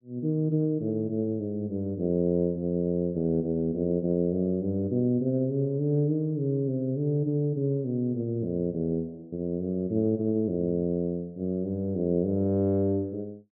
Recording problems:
low-pass filter; nothing above 4 kHz

